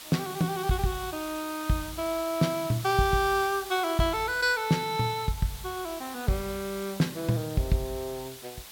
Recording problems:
hiss; slope +1 dB per octave, SNR 13 dB

